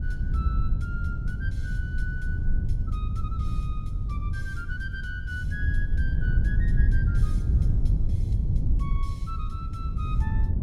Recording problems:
wind on the microphone; below 94 Hz, SNR -12 dB

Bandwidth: 16 kHz